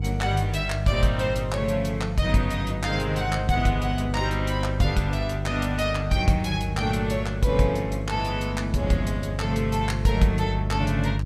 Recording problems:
hum; 50 Hz, harmonics up to 350 Hz, SNR 4 dB

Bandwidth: 15 kHz